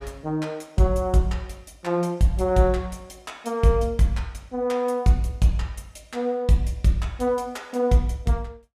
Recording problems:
none

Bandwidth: 15 kHz